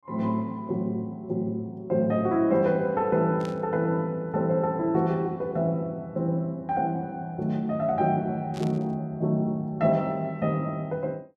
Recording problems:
burst of static; at 3.5 s and at 8.5 s; peak -11 dB vs average level

